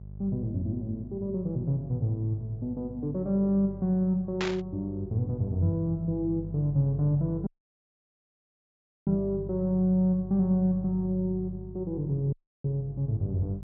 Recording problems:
treble cut off; nothing above 8 kHz
hum; 50 Hz, harmonics up to 400 Hz, SNR 13 dB
static burst; at 4.5 s; peak 0 dB vs average level
dropout; at 7.5 s for 1.5 s and at 12 s

